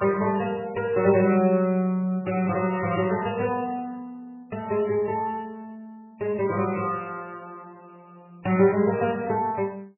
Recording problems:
lossy compression; MP3, log-spectral distance 3 dB, nothing above 2.6 kHz

